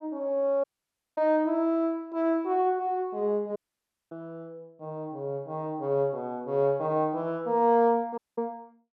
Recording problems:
audio cutting out; at 0.5 s for 0.5 s, at 3.5 s for 0.5 s and at 8 s

